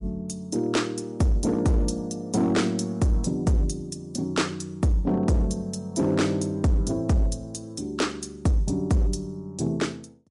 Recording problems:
codec artefacts; MP3, log-spectral distance 2 dB, nothing above 11 kHz
distorted audio; hard clipping, signal-to-distortion ratio 10 dB

